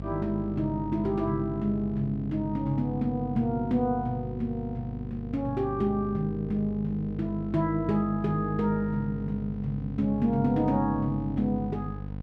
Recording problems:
hum; 50 Hz, harmonics up to 800 Hz, SNR 9 dB

